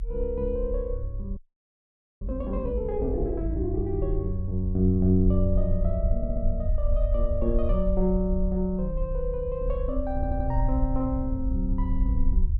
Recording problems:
low-frequency rumble; below 54 Hz, SNR 3 dB
frozen audio; at 1.5 s for 1 s
stutter; at 6 s and at 10 s

